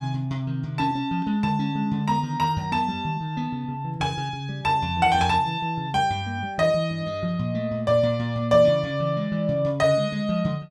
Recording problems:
none

